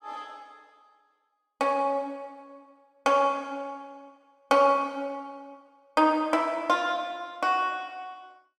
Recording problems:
none

